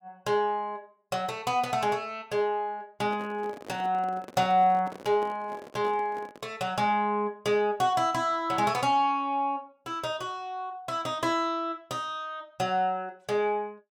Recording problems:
handling noise; from 3 to 6.5 s; peak -10 dB vs average level

